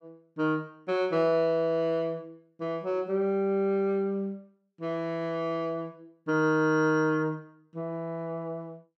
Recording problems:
none

